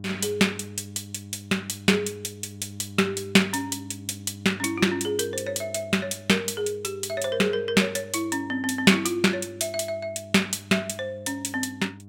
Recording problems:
hum; 50 Hz, harmonics up to 700 Hz, SNR 17 dB

